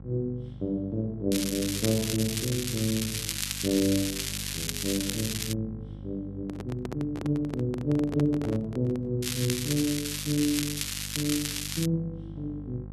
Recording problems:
hum; 50 Hz, harmonics up to 800 Hz, SNR 12 dB
crackling; from 1.5 to 5.5 s and from 9 to 12 s; loose cable, SNR 2 dB
microphone handling noise; from 6.5 to 9 s; peak -1 dB vs average level

